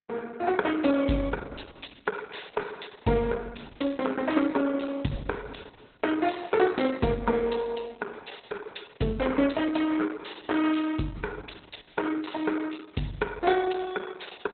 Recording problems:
lossy compression; Opus, log-spectral distance 8 dB, nothing above 4 kHz

